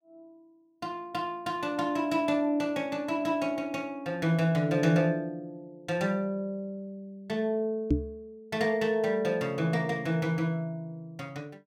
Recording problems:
microphone thump; at 8 s; peak +8 dB vs average level

